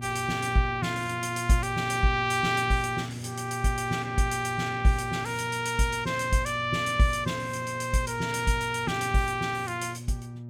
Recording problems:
electrical hum; 60 Hz, harmonics up to 600 Hz, SNR 11 dB

